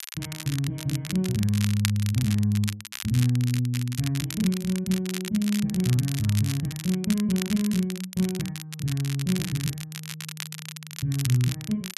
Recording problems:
crackling; vinyl, SNR 10 dB

